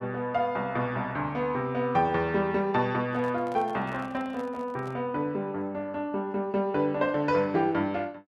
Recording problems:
microphone handling noise; from 3 to 5 s; peak -12 dB vs average level

